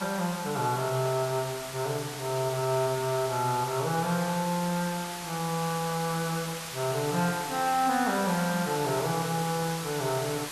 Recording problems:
background hiss; slope 0 dB per octave, SNR 8 dB

